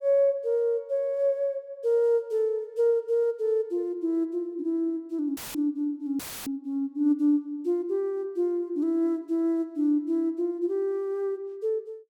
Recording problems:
dropout; at 5.5 s and at 6 s; filled with static

